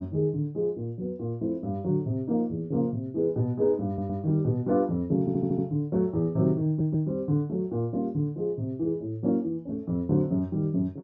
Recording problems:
stutter; at 4 s, at 5 s and at 6.5 s

